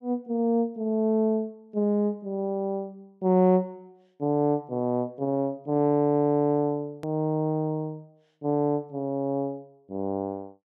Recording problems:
click at an edit; at 7 s

